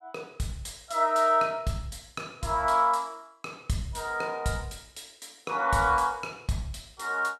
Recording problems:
none

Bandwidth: 14.5 kHz